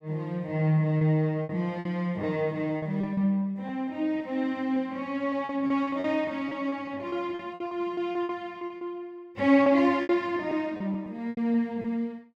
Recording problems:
lost packets; 11% of the sound replaced, filled with repeated pitch periods

